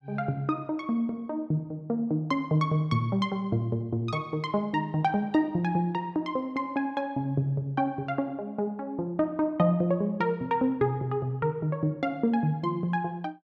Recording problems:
none

